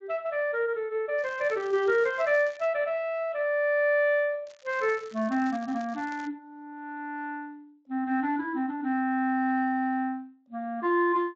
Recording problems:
lossy compression; Speex, log-spectral distance 2 dB
crackling; from 1 to 2.5 s and from 4.5 to 6.5 s; loose cable, SNR 24 dB

